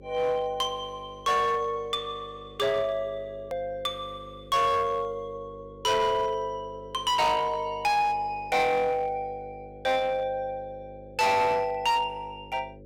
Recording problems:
distorted audio; hard clipping, uneven, signal-to-distortion ratio 10 dB
hum; 50 Hz, harmonics up to 550 Hz, SNR 21 dB
edit click; at 3.5 s

